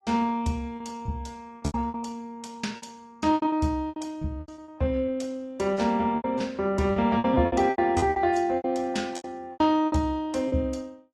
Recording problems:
codec artefacts; AAC, log-spectral distance 2 dB
lost packets; 14% of the sound replaced, filled with repeated pitch periods

